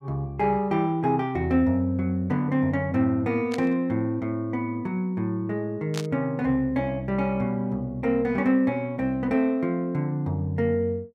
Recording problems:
burst of static; at 3.5 s and at 6 s; peak -4 dB vs average level

